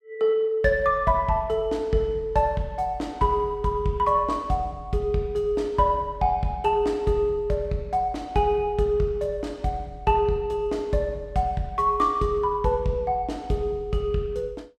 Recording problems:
none

